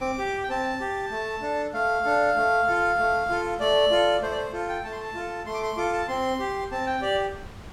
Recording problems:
wind noise; below 900 Hz, SNR 21 dB

